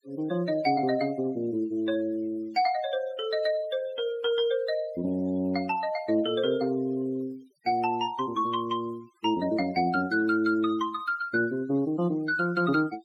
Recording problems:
denoising artefacts; signal-to-artefact ratio 23 dB

